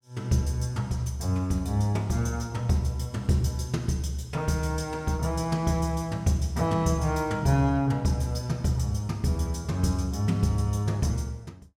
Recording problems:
none

